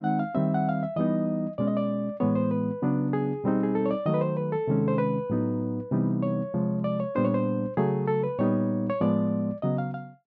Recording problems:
none

